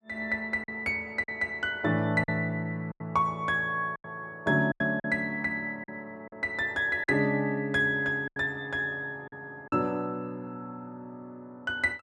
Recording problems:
lost packets; 6% of the sound replaced, filled with silence

